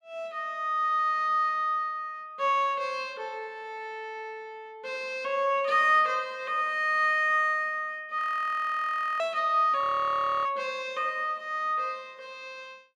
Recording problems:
frozen audio; at 8 s for 1 s and at 10 s for 0.5 s

